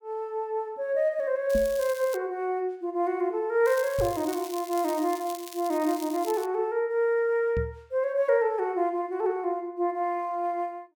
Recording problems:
crackle; at 1.5 s and from 3.5 to 6.5 s; loose cable, SNR 15 dB
microphone bump; at 1.5 s, at 4 s and at 7.5 s; peak -1 dB vs average level

